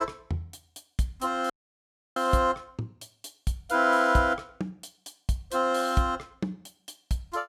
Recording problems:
audio cutting out; at 1.5 s for 0.5 s

